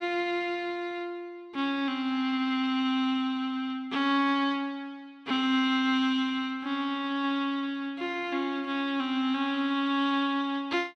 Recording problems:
none

